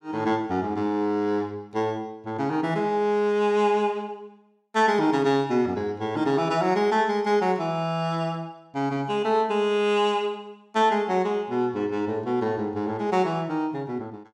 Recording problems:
none

